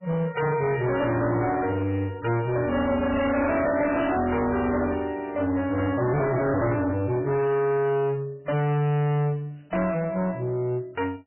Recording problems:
codec artefacts; MP3, log-spectral distance 4 dB, nothing above 2.8 kHz
distorted audio; hard clipping, uneven, signal-to-distortion ratio 6 dB

